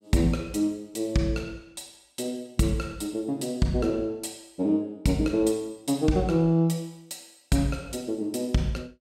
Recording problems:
none

